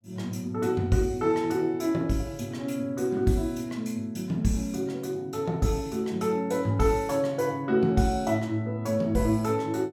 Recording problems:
none

